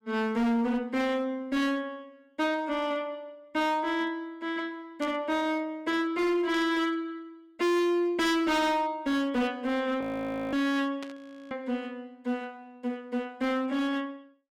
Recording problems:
distortion; hard clipping, signal-to-distortion ratio 7 dB
static burst; at 5 s, at 6.5 s and at 11 s; peak -10 dB vs average level
frozen audio; at 10 s for 0.5 s and at 11 s

